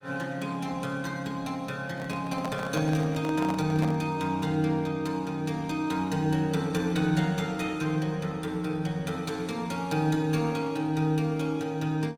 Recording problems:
lossy compression; Opus, log-spectral distance 3 dB, nothing above 19 kHz
handling noise; from 2 to 4 s; peak -3 dB vs average level

